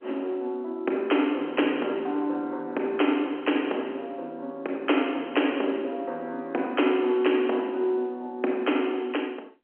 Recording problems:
phone line; 220 Hz to 3.3 kHz, G.711

